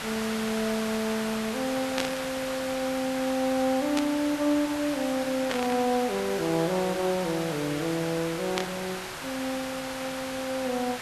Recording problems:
hiss; SNR 6 dB
static burst; 4 times, first at 2 s; peak +3 dB vs average level

